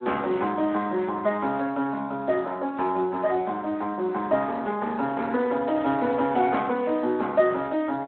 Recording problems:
phone line; 220 Hz to 3.8 kHz, Speex

